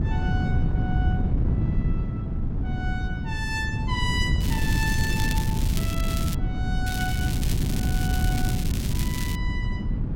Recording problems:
wind on the microphone; below 160 Hz, SNR -6 dB
crackling; from 4.5 to 6.5 s and from 7 to 9.5 s; loose cable, SNR 3 dB

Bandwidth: 16.5 kHz